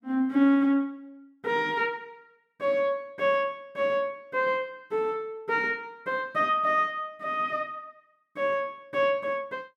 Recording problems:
none

